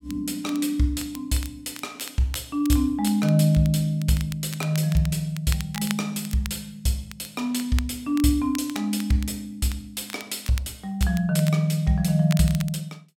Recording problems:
crackling; vinyl, SNR 16 dB

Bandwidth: 16.5 kHz